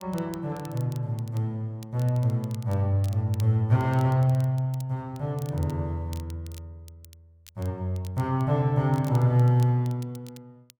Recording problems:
crackle; vinyl, SNR 25 dB

